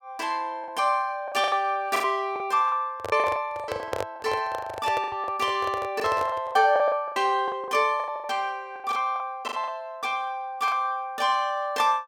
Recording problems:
lost packets; 14% of the sound replaced, filled with the last packet
microphone handling noise; from 3 to 6.5 s; peak +1 dB vs average level

